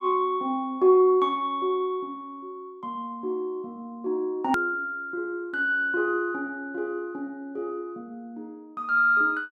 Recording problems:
edit click; at 4.5 s

